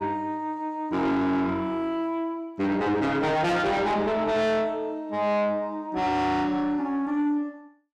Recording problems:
distortion; soft clipping, signal-to-distortion ratio 8 dB

